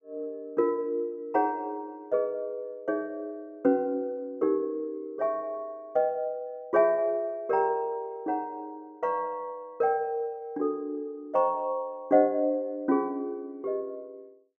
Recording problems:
none

